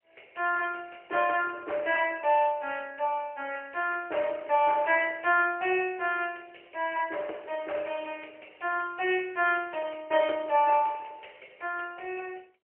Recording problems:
phone line; 320 Hz to 3.1 kHz, AMR-NB, then MP3

